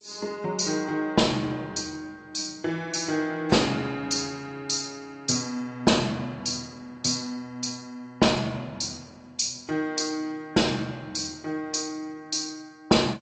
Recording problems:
codec artefacts; G.722, then AAC, log-spectral distance 7 dB, nothing above 7.3 kHz

